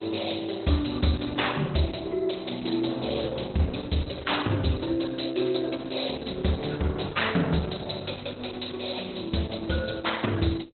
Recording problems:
codec artefacts; Opus, log-spectral distance 9 dB, nothing above 4.1 kHz

